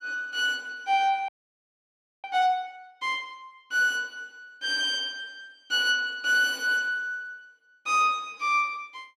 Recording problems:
frozen audio; at 1.5 s for 1 s

